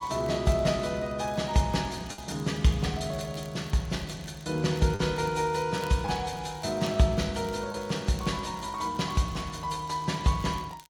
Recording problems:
lossy compression; AAC, log-spectral distance 3 dB, nothing above 14.3 kHz
crackling; vinyl, SNR 25 dB
lost packets; 1.4% of the sound replaced, filled with the last packet

